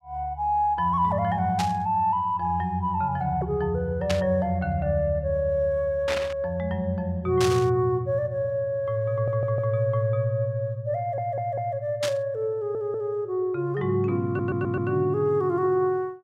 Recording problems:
static burst; 5 times, first at 1.5 s; peak 0 dB vs average level
stutter; 4 times, first at 9 s

